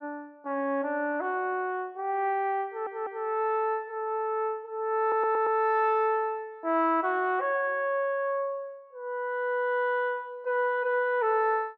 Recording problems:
audio stuttering; at 2.5 s and at 5 s

